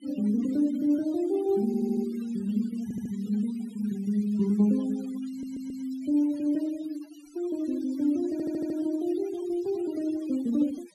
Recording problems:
denoising artefacts; signal-to-artefact ratio 22 dB
audio stuttering; 4 times, first at 1.5 s

